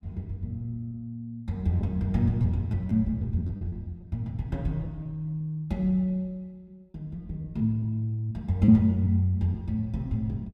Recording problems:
packet loss; 4% of the sound replaced, filled with repeated pitch periods

